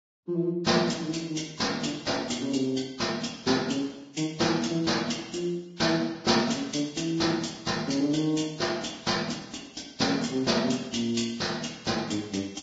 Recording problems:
codec artefacts; Vorbis, log-spectral distance 6 dB, nothing above 7.3 kHz

